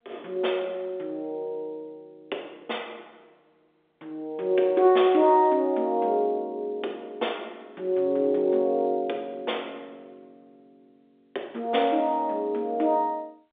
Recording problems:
telephone audio; 280 Hz to 3.6 kHz, G.711

